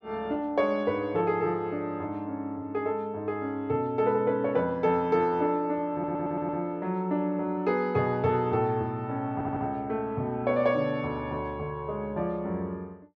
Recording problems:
stutter; at 6 s and at 9.5 s

